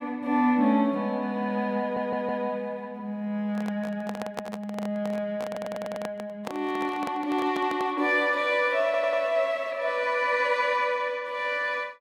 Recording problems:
stutter; at 2 s, at 5.5 s and at 9 s
microphone handling noise; from 3.5 to 8 s; peak -2 dB vs average level

